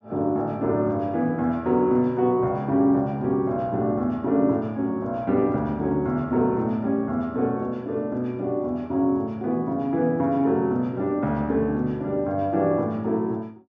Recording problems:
low-pass filter; nothing above 8 kHz

